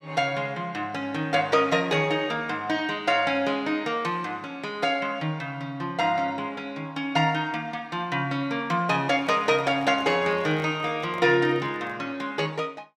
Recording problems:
microphone handling noise; from 9 to 12 s; peak -12 dB vs average level

